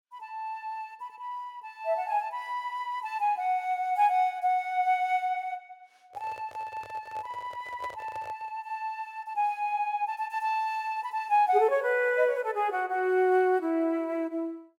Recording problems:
microphone handling noise; from 6 to 8.5 s; peak -9 dB vs average level

